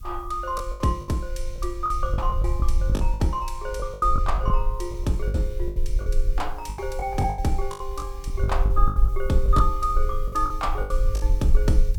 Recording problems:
hiss; SNR 28 dB
rumble; below 52 Hz, strongest tone 20 Hz, SNR 0 dB
packet loss; 13% of the sound replaced, filled with the last packet

